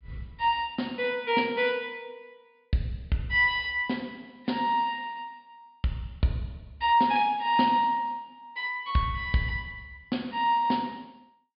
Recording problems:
treble cut off; nothing above 4.9 kHz

